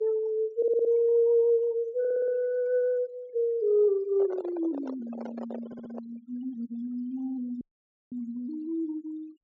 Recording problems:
treble missing; nothing above 8 kHz
denoising artefacts; signal-to-artefact ratio 26 dB
audio stuttering; at 0.5 s, at 2 s and at 5.5 s
microphone handling noise; from 4 to 6 s; peak -8 dB vs average level
audio cutting out; at 7.5 s for 0.5 s

